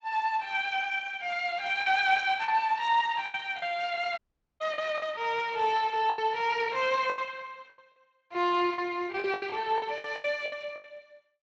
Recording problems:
codec artefacts; Speex, log-spectral distance 4 dB
packet loss; 10% of the sound replaced, filled with the last packet
audio cutting out; at 4 s

